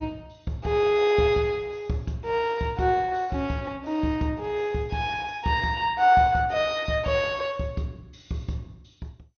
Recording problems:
lossy codec; MP2, log-spectral distance 2 dB, nothing above 6.2 kHz

